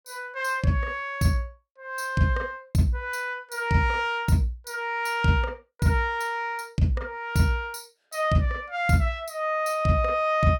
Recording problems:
none

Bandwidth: 17.5 kHz